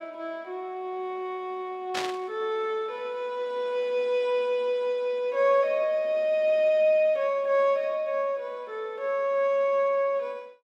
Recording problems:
static burst; at 2 s; peak 0 dB vs average level

